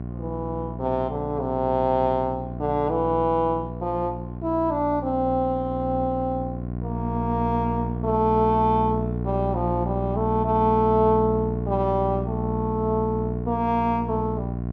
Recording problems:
hum; 60 Hz, harmonics up to 780 Hz, SNR 6 dB

